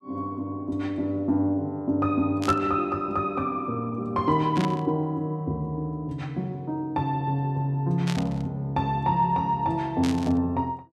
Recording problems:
burst of static; 4 times, first at 2.5 s; peak -4 dB vs average level

